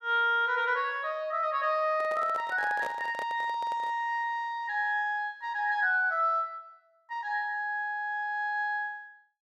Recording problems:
microphone handling noise; from 2 to 4 s; peak -5 dB vs average level

